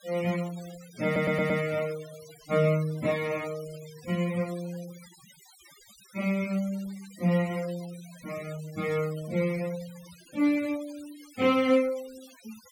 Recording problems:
noise reduction artefacts; signal-to-artefact ratio 19 dB
audio stuttering; at 1 s

